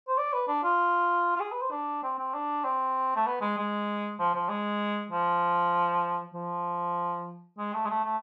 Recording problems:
none

